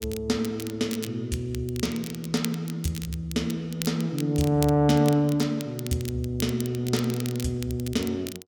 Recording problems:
crackle; vinyl, SNR 13 dB

